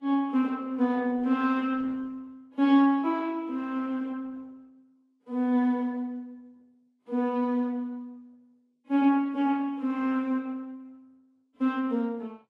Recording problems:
codec artefacts; Opus, then Vorbis, log-spectral distance 2 dB, nothing above 12 kHz

